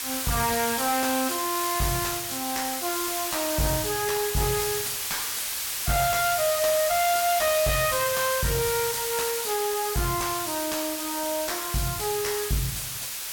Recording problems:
distorted audio; soft clipping, signal-to-distortion ratio 9 dB
background hiss; slope +3 dB per octave, SNR 1 dB

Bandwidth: 17 kHz